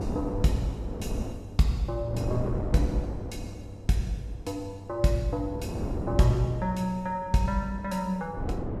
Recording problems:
wind noise; below 360 Hz, SNR 6 dB

